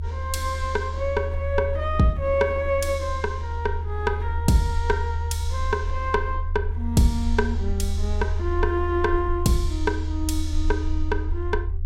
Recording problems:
low-frequency rumble; below 80 Hz, SNR 2 dB

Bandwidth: 16.5 kHz